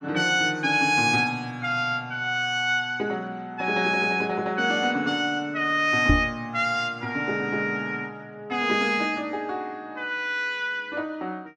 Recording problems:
knock on the microphone; at 6 s; peak +7 dB vs average level

